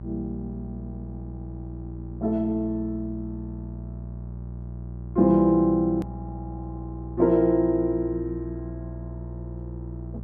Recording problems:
mains hum; 60 Hz, harmonics up to 600 Hz, SNR 12 dB
click at an edit; at 6 s

